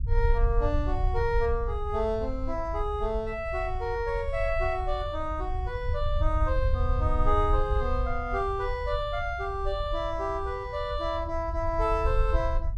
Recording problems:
low-frequency rumble; below 72 Hz, SNR 2 dB

